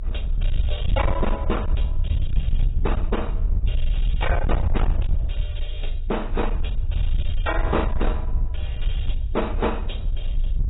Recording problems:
lossy codec; AAC, log-spectral distance 3 dB, nothing above 3.8 kHz
distorted audio; hard clipping, uneven, signal-to-distortion ratio 7 dB
low-frequency rumble; below 66 Hz, SNR -2 dB

